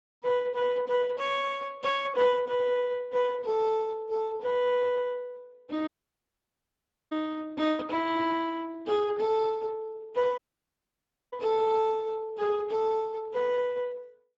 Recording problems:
lossy compression; Speex, log-spectral distance 3 dB
dropout; at 6 s for 1 s and at 10 s for 1 s

